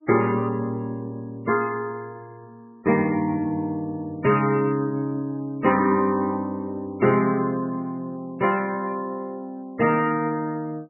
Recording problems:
codec artefacts; MP3, log-spectral distance 2 dB

